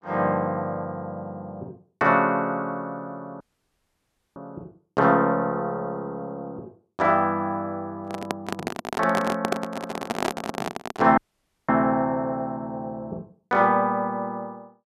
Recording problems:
audio cutting out; at 3.5 s for 1 s and at 11 s for 0.5 s
handling noise; from 8 to 11 s; peak +4 dB vs average level

